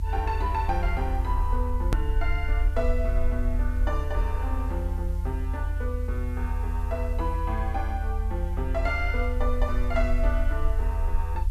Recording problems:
background hiss; slope -1 dB per octave, SNR 24 dB
rumble; below 76 Hz, SNR -4 dB
edit click; at 2 s

